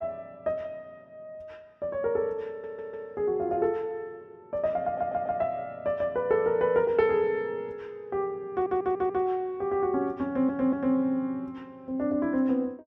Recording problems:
audio stuttering; 4 times, first at 2.5 s

